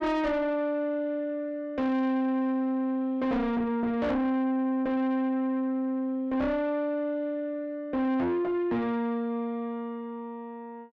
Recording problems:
distortion; soft clipping, signal-to-distortion ratio 7 dB

